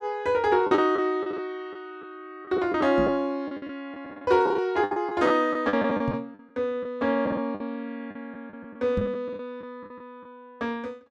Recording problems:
lost packets; 12% of the sound replaced, filled with the last packet
microphone thump; at 3 s, at 6 s and at 9 s; peak +2 dB vs average level

